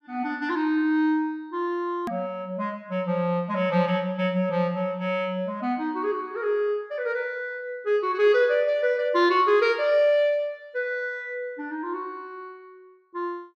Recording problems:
hard cut with a click; at 2 s

